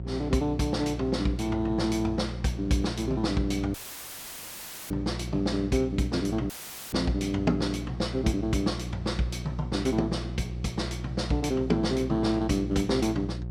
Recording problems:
mains hum; 60 Hz, harmonics up to 540 Hz, SNR 8 dB
dropout; at 3.5 s for 1 s and at 6.5 s; filled with static

